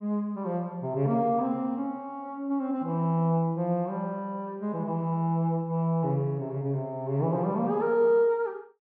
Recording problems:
treble cut off; nothing above 8 kHz

